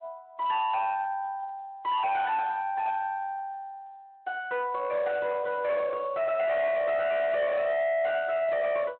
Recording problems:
telephone audio; 190 Hz to 3.9 kHz, Speex
distortion; hard clipping, uneven, signal-to-distortion ratio 7 dB

